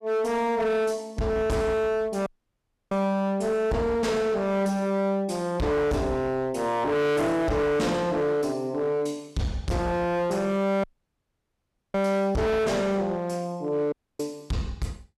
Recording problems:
distorted audio; hard clipping, signal-to-distortion ratio 6 dB
dropout; at 2.5 s for 0.5 s, at 11 s for 1 s and at 14 s

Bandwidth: 13.5 kHz